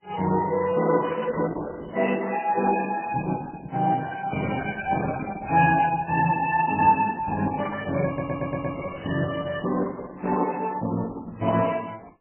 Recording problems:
lossy compression; Opus, then MP3, log-spectral distance 4 dB, nothing above 2.7 kHz
stutter; at 8 s

